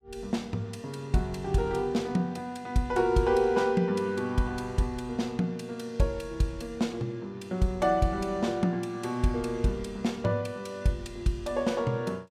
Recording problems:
none

